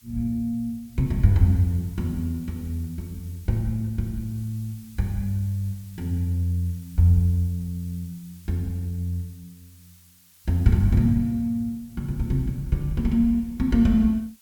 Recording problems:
hiss; slope +3 dB per octave, SNR 26 dB

